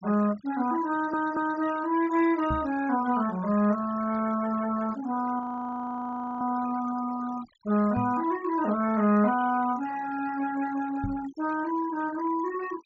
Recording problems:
low-pass filter; nothing above 8 kHz
denoising artefacts; signal-to-artefact ratio 18 dB
stutter; at 1 s
microphone bump; at 2.5 s, at 8 s and at 11 s; peak +1 dB vs average level
frozen audio; at 5.5 s for 1 s

